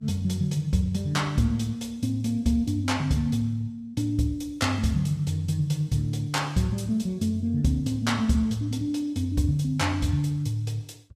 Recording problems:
lossy codec; Vorbis, log-spectral distance 2 dB, nothing above 14.3 kHz

